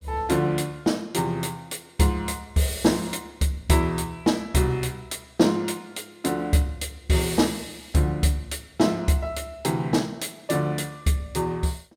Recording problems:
none

